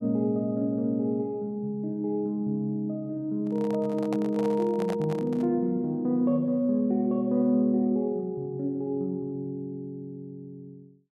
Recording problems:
microphone handling noise; from 3.5 to 5.5 s; peak -5 dB vs average level

